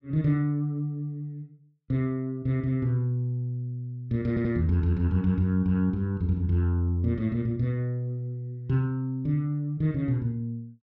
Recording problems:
audio stuttering; at 4.5 s

